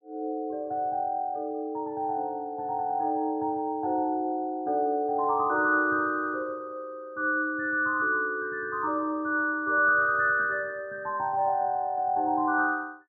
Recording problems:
none

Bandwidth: 2 kHz